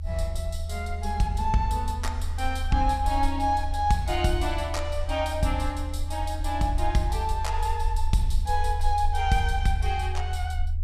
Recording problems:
rumble; below 78 Hz, SNR 3 dB

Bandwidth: 14.5 kHz